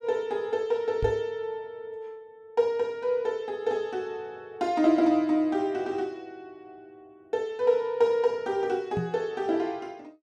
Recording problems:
microphone bump; at 1 s and at 9 s; peak 0 dB vs average level

